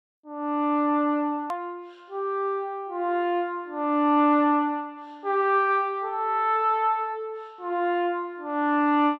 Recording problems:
edit click; at 1.5 s

